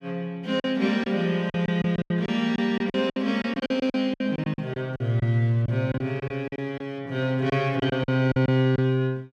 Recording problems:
lost packets; 12% of the sound replaced, filled with silence

